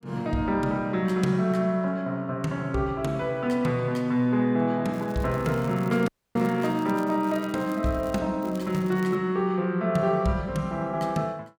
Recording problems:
crackle; from 5 to 8 s and at 8.5 s; loose cable, SNR 24 dB
dropout; at 6 s

